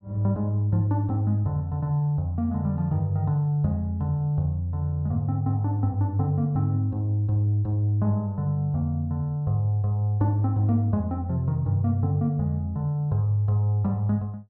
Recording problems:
none

